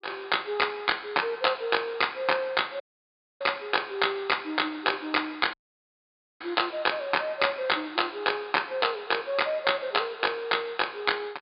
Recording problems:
treble cut off; nothing above 4.8 kHz
audio cutting out; at 3 s for 0.5 s and at 5.5 s for 1 s

